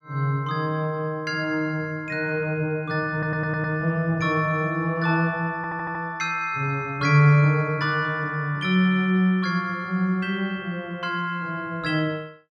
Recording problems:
audio stuttering; at 3 s and at 5.5 s

